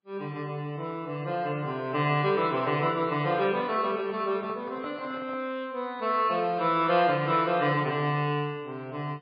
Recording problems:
lossy compression; MP3, log-spectral distance 2 dB, nothing above 4.4 kHz
handling noise; from 2 to 5.5 s; peak -12 dB vs average level

